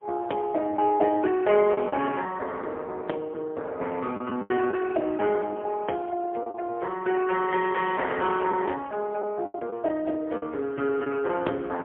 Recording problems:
telephone audio; 320 Hz to 2.6 kHz, AMR-NB, then MP3
lost packets; 4% of the sound replaced, filled with the last packet

